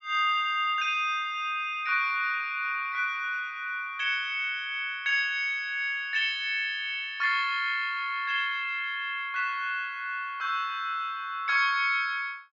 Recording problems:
low-pass filter; nothing above 8 kHz

